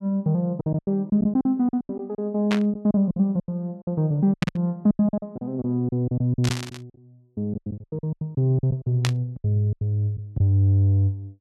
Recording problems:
lost packets; 16% of the sound replaced, filled with silence
static burst; 4 times, first at 2.5 s; peak +1 dB vs average level

